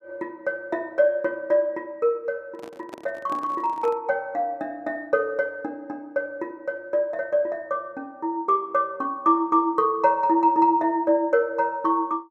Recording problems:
handling noise; from 2.5 to 4 s; peak -10 dB vs average level

